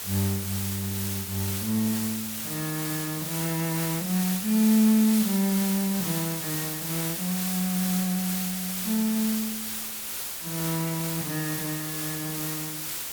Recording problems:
hiss; slope +1 dB per octave, SNR 2 dB

